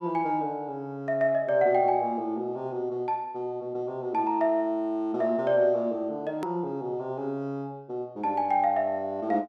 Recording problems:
click at an edit; at 6.5 s

